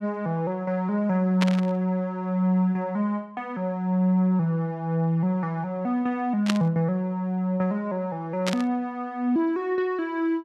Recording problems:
burst of static; at 1.5 s, at 6.5 s and at 8.5 s; peak +2 dB vs average level

